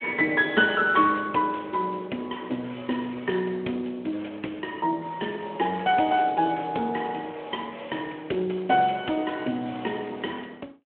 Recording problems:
phone line; 190 Hz to 3.4 kHz, Speex

